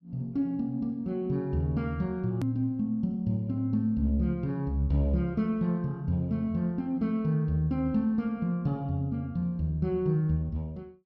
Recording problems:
hard cut with a click; at 2.5 s

